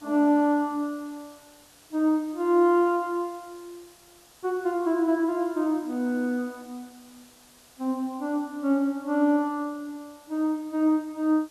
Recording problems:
background hiss; SNR 27 dB

